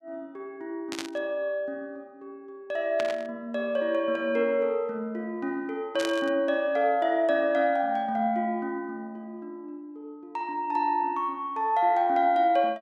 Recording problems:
burst of static; at 1 s, at 3 s and at 6 s; peak -4 dB vs average level

